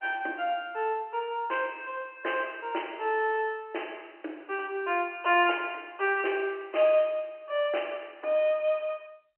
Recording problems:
telephone audio; 280 Hz to 3.1 kHz, G.711

